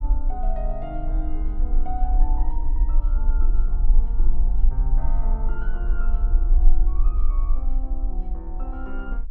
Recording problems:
low-frequency rumble; below 36 Hz, strongest tone 18 Hz, SNR -12 dB

